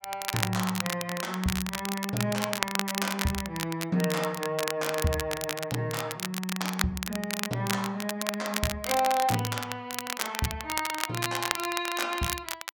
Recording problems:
crackling; vinyl, SNR 2 dB

